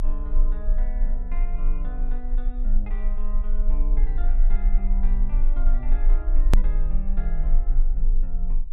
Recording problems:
low-frequency rumble; below 32 Hz, strongest tone 24 Hz, SNR -14 dB
click at an edit; at 6.5 s

